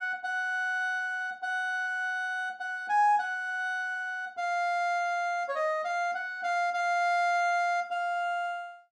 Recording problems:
none

